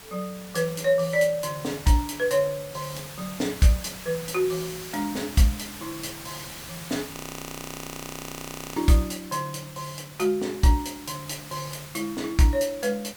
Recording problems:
hiss; slope -1 dB per octave, SNR 13 dB
audio freezing; at 7 s for 1.5 s

